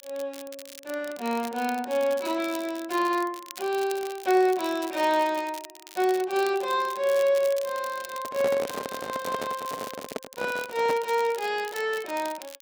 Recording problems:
crackle; vinyl, SNR 16 dB
microphone handling noise; from 8 to 11 s; peak -1 dB vs average level

